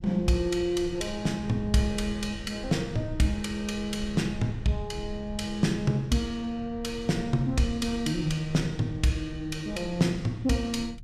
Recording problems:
low-frequency rumble; below 120 Hz, SNR 14 dB

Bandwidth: 15 kHz